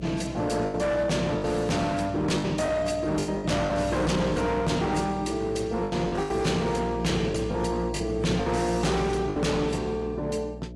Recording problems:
lossy codec; AAC, log-spectral distance 3 dB, nothing above 11 kHz
distortion; hard clipping, signal-to-distortion ratio 7 dB
electrical hum; 60 Hz, harmonics up to 660 Hz, SNR 11 dB
packet loss; 8% of the sound replaced, filled with the last packet

